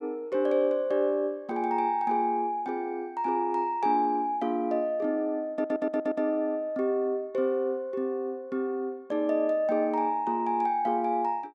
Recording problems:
stutter; at 5.5 s

